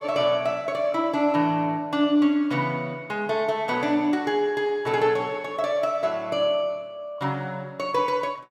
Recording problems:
none

